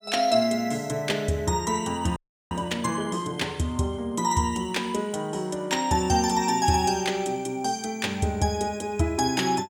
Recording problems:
audio freezing; at 2 s

